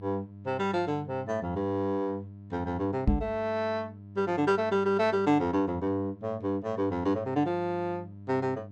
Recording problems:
electrical hum; 50 Hz, harmonics up to 600 Hz, SNR 16 dB
microphone bump; at 3 s; peak +8 dB vs average level

